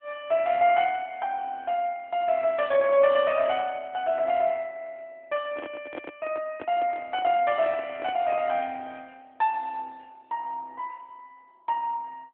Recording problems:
telephone audio; 280 Hz to 3.5 kHz, AMR-NB
microphone handling noise; from 5.5 to 8.5 s; peak -6 dB vs average level

